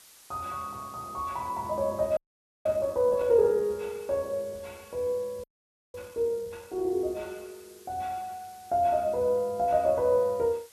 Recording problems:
hiss; slope +1 dB per octave, SNR 24 dB
frozen audio; at 2 s and at 5.5 s for 0.5 s

